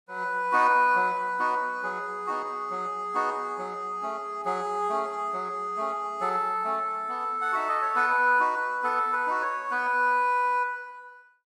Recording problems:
none

